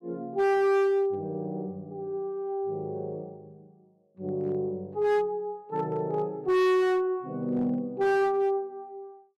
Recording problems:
distortion; hard clipping, uneven, signal-to-distortion ratio 6 dB

